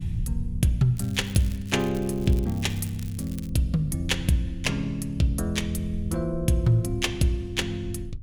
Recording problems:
rumble; below 96 Hz, SNR 12 dB
crackling; from 1 to 3.5 s; loose cable, SNR 21 dB

